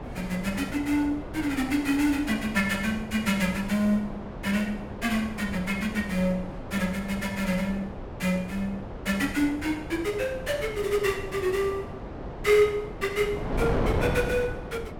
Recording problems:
wind on the microphone; below 590 Hz, SNR 8 dB

